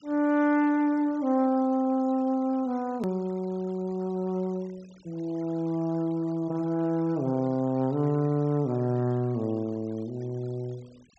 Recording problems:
treble missing; nothing above 8 kHz
noise reduction artefacts; signal-to-artefact ratio 27 dB
click at an edit; at 3 s

